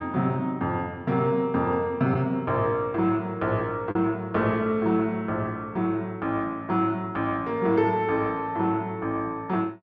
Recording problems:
lost packets; 0.5% of the sound replaced, filled with the last packet

